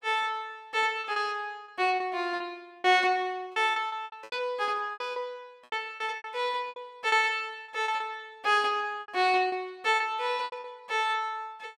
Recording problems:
lost packets; 12% of the sound replaced, filled with repeated pitch periods

